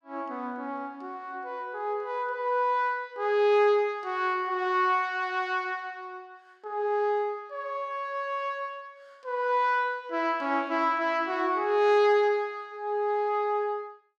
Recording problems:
none

